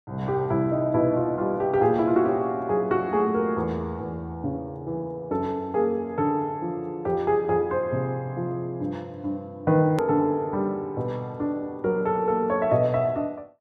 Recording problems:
hard cut with a click; at 10 s

